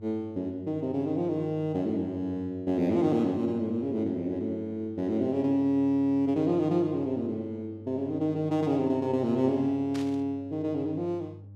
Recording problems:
hum; 50 Hz, harmonics up to 500 Hz, SNR 18 dB
burst of static; at 10 s; peak -10 dB vs average level

